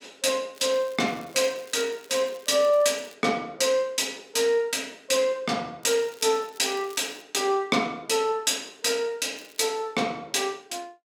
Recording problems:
crackle; from 0.5 to 3 s, from 6 to 7 s and at 9.5 s; loose cable, SNR 25 dB

